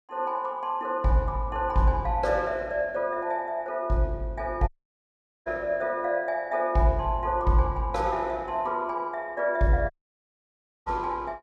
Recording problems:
dropout; at 4.5 s for 1 s and at 10 s for 1 s

